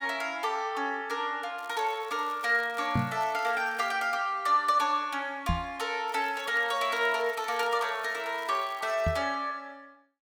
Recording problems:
crackling; from 1.5 to 4 s and from 6 to 9 s; loose cable, SNR 24 dB
microphone bump; at 3 s, at 5.5 s and at 9 s; peak +4 dB vs average level

